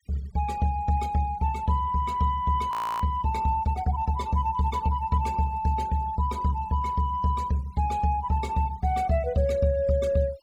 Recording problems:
noise reduction artefacts; signal-to-artefact ratio 25 dB
audio freezing; at 2.5 s

